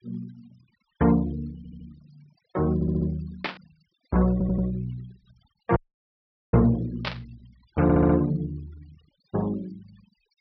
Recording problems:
low-pass filter; nothing above 5.5 kHz
noise reduction artefacts; signal-to-artefact ratio 27 dB
audio stuttering; 4 times, first at 1.5 s
static burst; at 3.5 s and at 7 s; peak +1 dB vs average level
audio cutting out; at 6 s for 1 s

